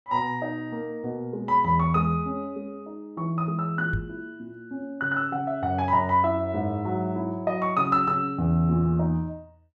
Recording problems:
microphone thump; at 4 s; peak 0 dB vs average level

